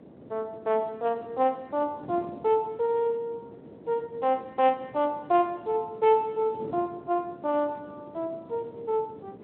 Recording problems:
phone line; 300 Hz to 3.5 kHz, Speex
wind noise; below 470 Hz, SNR 18 dB

